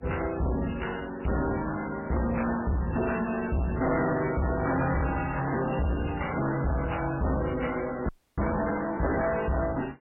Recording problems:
codec artefacts; MP3, then AAC, log-spectral distance 8 dB, nothing above 2.8 kHz
distorted audio; hard clipping, uneven, signal-to-distortion ratio 5 dB
audio freezing; at 8 s

